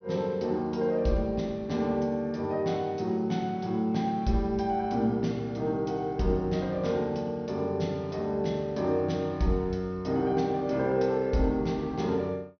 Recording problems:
treble missing; nothing above 6.2 kHz

